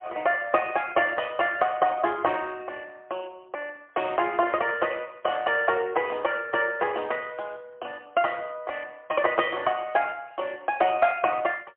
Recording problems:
telephone audio; 240 Hz to 3.3 kHz, AMR-NB, then MP3

